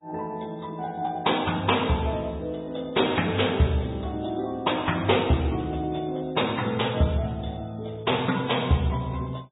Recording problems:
low-pass filter; nothing above 3.8 kHz
lossy compression; MP3, log-spectral distance 5 dB

